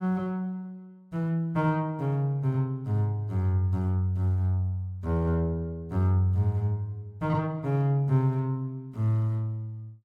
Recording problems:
none

